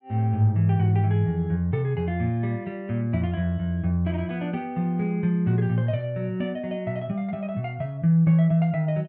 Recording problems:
none

